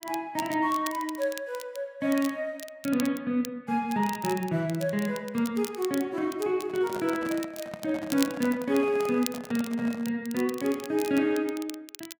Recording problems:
crackling; vinyl, SNR 14 dB
handling noise; from 6.5 to 10 s; peak -6 dB vs average level

